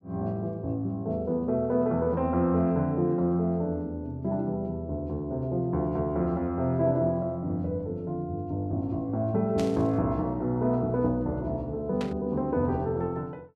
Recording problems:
static burst; at 9.5 s and at 12 s; peak -7 dB vs average level

